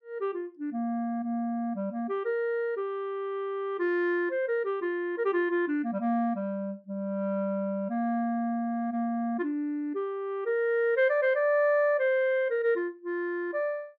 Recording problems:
none

